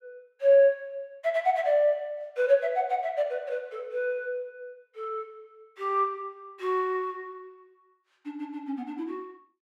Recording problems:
none

